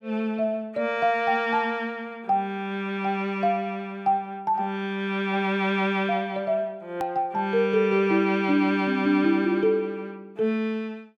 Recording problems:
hard cut with a click; at 7 s

